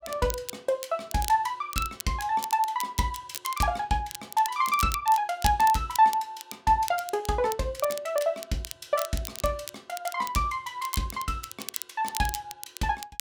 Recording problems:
crackling; vinyl, SNR 11 dB

